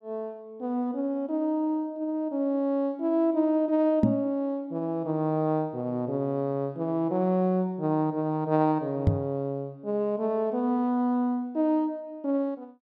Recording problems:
microphone bump; at 4 s and at 9 s; peak +9 dB vs average level

